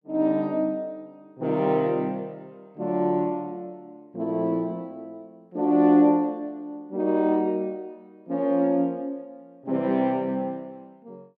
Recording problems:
none

